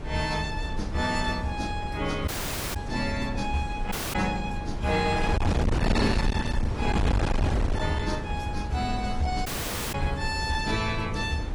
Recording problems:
lossy codec; AAC, log-spectral distance 3 dB
distorted audio; hard clipping, signal-to-distortion ratio 6 dB
wind noise; below 310 Hz, SNR 1 dB
dropout; at 2.5 s, at 4 s and at 9.5 s

